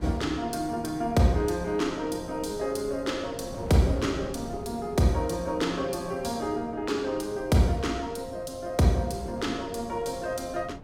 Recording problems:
wind on the microphone; below 390 Hz, SNR 14 dB

